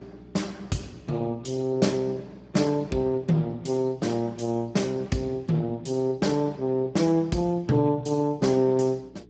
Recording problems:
codec artefacts; Speex, log-spectral distance 3 dB, nothing above 7.6 kHz
mains hum; 60 Hz, harmonics up to 420 Hz, SNR 26 dB

